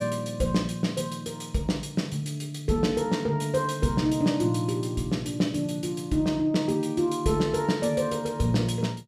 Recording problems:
none

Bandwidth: 14.5 kHz